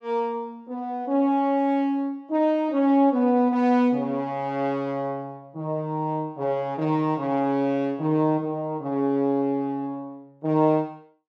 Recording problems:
none

